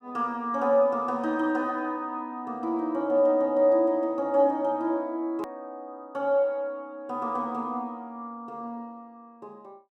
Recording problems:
click at an edit; at 5.5 s

